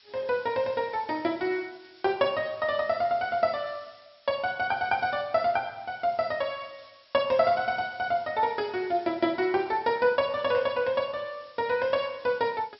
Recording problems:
treble cut off; nothing above 5.5 kHz
background hiss; slope +3 dB per octave, SNR 27 dB

